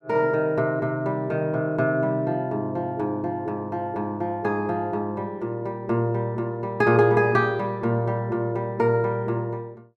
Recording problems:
none

